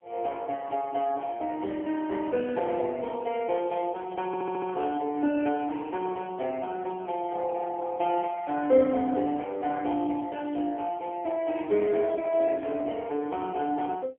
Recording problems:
telephone audio; 260 Hz to 3.3 kHz, AMR-NB, then MP3
audio stuttering; at 4.5 s

